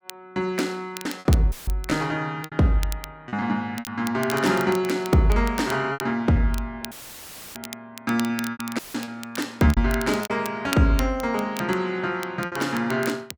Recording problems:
crackle; vinyl, SNR 15 dB
packet loss; 7% of the sound replaced, filled with repeated pitch periods
audio cutting out; at 1.5 s, at 7 s for 0.5 s and at 9 s; filled with static

